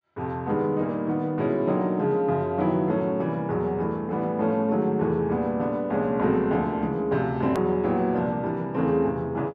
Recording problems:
hard cut with a click; at 7.5 s

